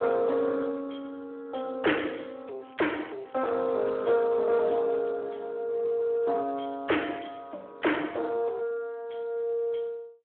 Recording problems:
telephone audio; 260 Hz to 3.4 kHz, Speex
distortion; soft clipping, signal-to-distortion ratio 12 dB
crackling; from 2.5 to 5 s; loose cable, SNR 28 dB

